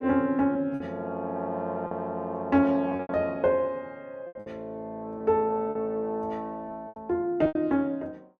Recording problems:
lost packets; 8% of the sound replaced, filled with repeated pitch periods

